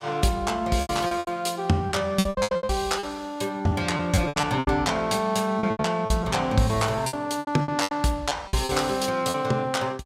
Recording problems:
packet loss; 15% of the sound replaced, filled with repeated pitch periods

